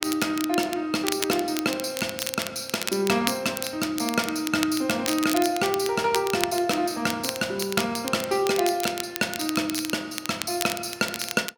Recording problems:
crackling; vinyl, SNR 7 dB

